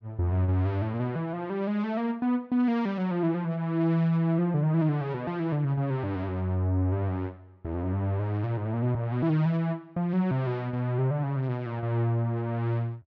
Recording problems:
none

